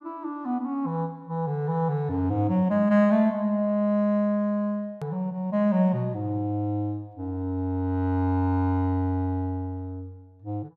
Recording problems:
click at an edit; at 5 s

